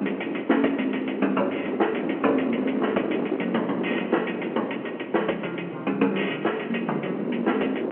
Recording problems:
phone line; 240 Hz to 3.2 kHz, G.711
wind on the microphone; below 500 Hz, SNR 4 dB

